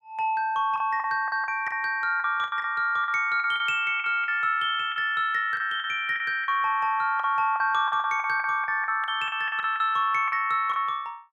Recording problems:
packet loss; 12% of the sound replaced, filled with the last packet

